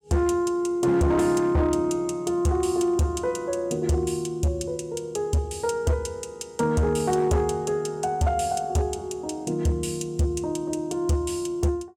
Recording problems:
distortion; hard clipping, signal-to-distortion ratio 12 dB

